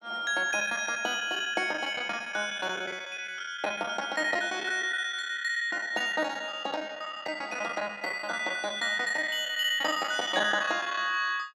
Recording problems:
lost packets; 13% of the sound replaced, filled with the last packet

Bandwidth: 17 kHz